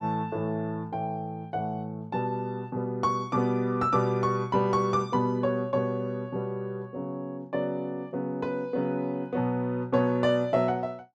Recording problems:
none

